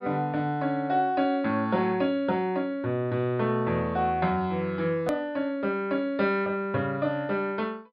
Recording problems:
treble missing; nothing above 5.5 kHz
hard cut with a click; at 5 s

